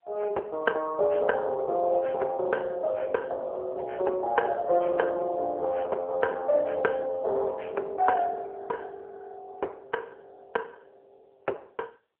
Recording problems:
phone line; 320 Hz to 3 kHz, AMR-NB

